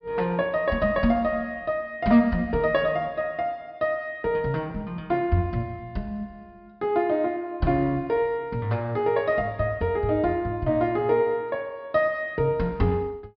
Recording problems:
treble cut off; nothing above 5.5 kHz

